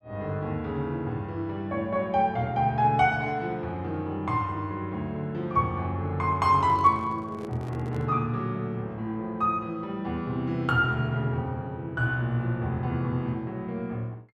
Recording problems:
microphone handling noise; from 6.5 to 8 s; peak -8 dB vs average level

